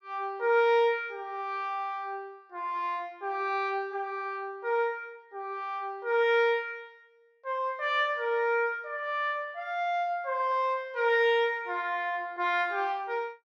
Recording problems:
none

